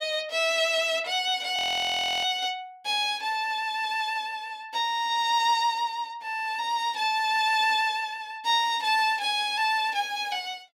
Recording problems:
frozen audio; at 1.5 s for 0.5 s

